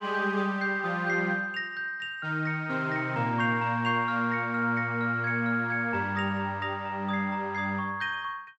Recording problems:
none

